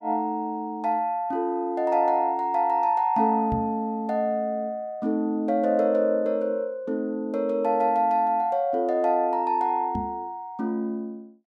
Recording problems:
knock on the microphone; at 3.5 s and at 10 s; peak -2 dB vs average level

